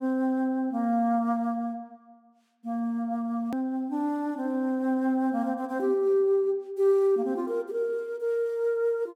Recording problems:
click at an edit; at 3.5 s

